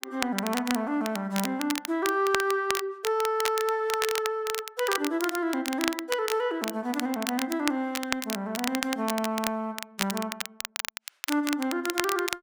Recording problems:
crackling; vinyl, SNR 5 dB

